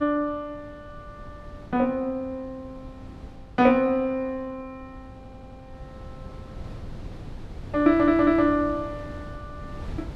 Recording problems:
wind noise; below 220 Hz, SNR 18 dB
stutter; at 5 s and at 8 s

